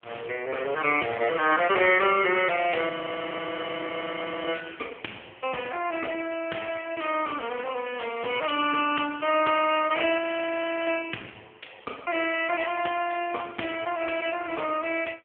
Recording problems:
phone line; 220 Hz to 3.2 kHz, AMR-NB
frozen audio; at 3 s for 1.5 s and at 10 s for 0.5 s

